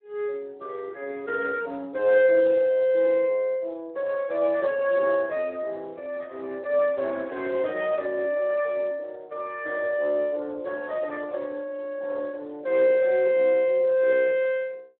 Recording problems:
telephone audio; 190 Hz to 3.1 kHz, Speex

